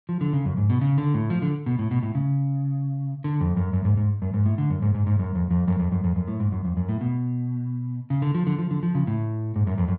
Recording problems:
none

